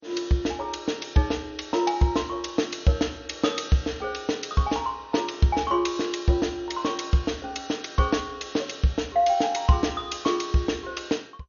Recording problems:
codec artefacts; MP2, log-spectral distance 5 dB, nothing above 6.7 kHz

